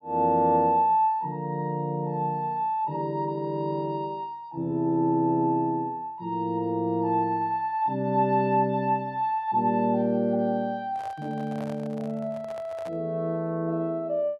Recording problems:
handling noise; from 11 to 13 s; peak -10 dB vs average level

